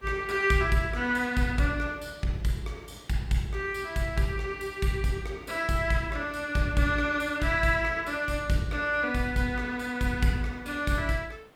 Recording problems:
background hiss; SNR 29 dB

